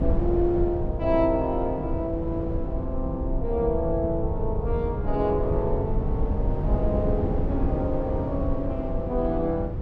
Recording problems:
rumble; below 110 Hz, SNR 3 dB
wind on the microphone; below 410 Hz, SNR 8 dB

